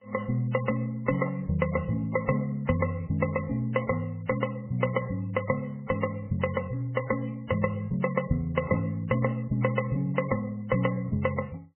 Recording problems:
lossy compression; MP3, then MP3, log-spectral distance 5 dB, nothing above 3 kHz

